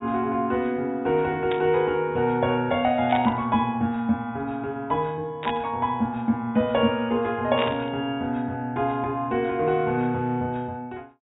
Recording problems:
treble cut off; nothing above 4 kHz
static burst; 4 times, first at 1.5 s; peak -2 dB vs average level

